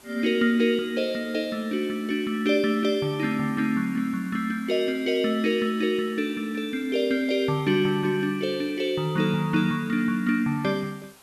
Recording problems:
hiss; slope -2 dB per octave, SNR 25 dB

